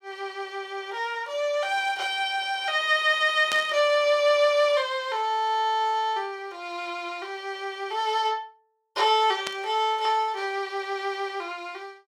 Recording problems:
burst of static; at 3.5 s and at 9.5 s; peak -1 dB vs average level

